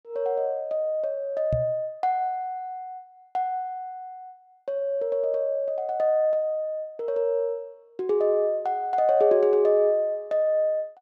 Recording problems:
microphone thump; at 1.5 s; peak 0 dB vs average level

